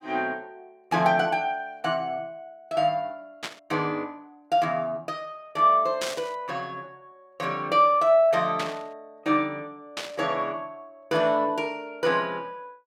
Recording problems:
burst of static; 4 times, first at 3.5 s; peak -2 dB vs average level

